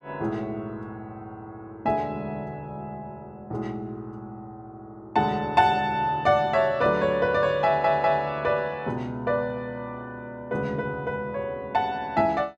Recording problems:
stutter; at 7.5 s

